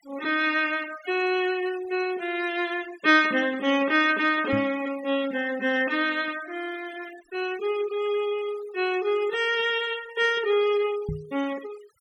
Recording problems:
noise reduction artefacts; signal-to-artefact ratio 19 dB
knock on the microphone; at 4.5 s and at 11 s; peak -3 dB vs average level

